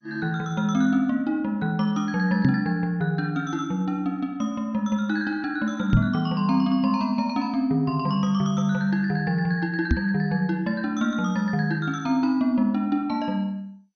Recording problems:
lossy codec; MP2, log-spectral distance 2 dB, nothing above 6.3 kHz
microphone bump; at 2.5 s, at 6 s and at 10 s; peak +8 dB vs average level

